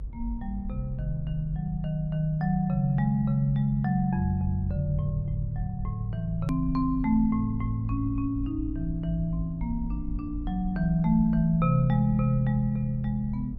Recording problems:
rumble; below 56 Hz, strongest tone 48 Hz, SNR 11 dB
click at an edit; at 6.5 s

